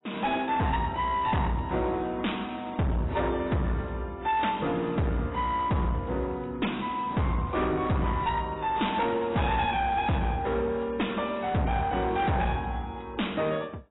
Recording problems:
lossy codec; AAC, log-spectral distance 4 dB, nothing above 3.8 kHz
distortion; hard clipping, uneven, signal-to-distortion ratio 6 dB

